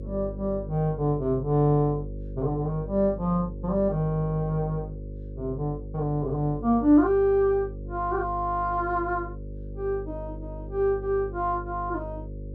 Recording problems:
electrical hum; 50 Hz, harmonics up to 550 Hz, SNR 12 dB

